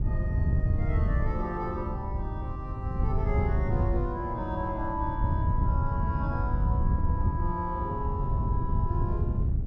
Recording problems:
wind noise; below 110 Hz, SNR -5 dB

